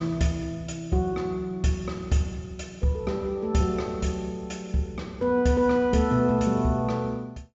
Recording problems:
low-pass filter; nothing above 7.6 kHz

